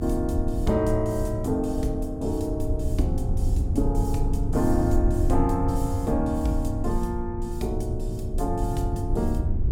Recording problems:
rumble; below 96 Hz, SNR 1 dB

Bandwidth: 17.5 kHz